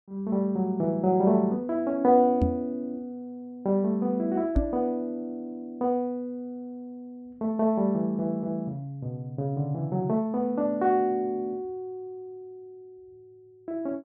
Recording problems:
microphone bump; at 2.5 s and at 4.5 s; peak +6 dB vs average level

